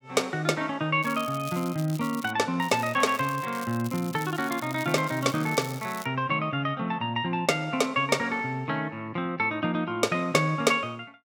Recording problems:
crackle; from 1 to 2.5 s and from 2.5 to 6 s; loose cable, SNR 16 dB

